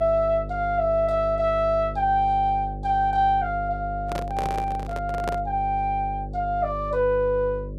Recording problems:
hum; 50 Hz, harmonics up to 600 Hz, SNR 11 dB
handling noise; from 4 to 5.5 s; peak -2 dB vs average level

